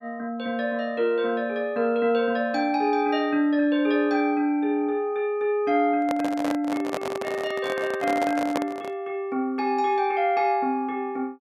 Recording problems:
handling noise; from 6 to 9 s; peak +1 dB vs average level

